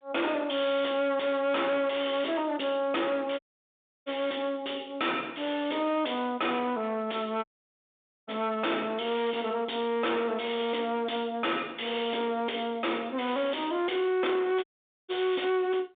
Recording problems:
phone line; 190 Hz to 3.6 kHz, G.726
distortion; hard clipping, signal-to-distortion ratio 6 dB
audio cutting out; at 3.5 s for 0.5 s, at 7.5 s for 1 s and at 15 s

